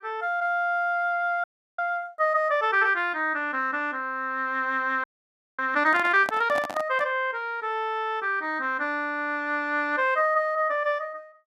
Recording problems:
frozen audio; at 1.5 s and at 5 s for 0.5 s
microphone handling noise; from 6 to 7 s; peak -2 dB vs average level

